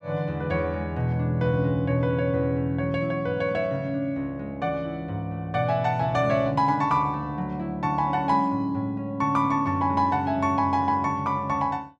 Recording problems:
none

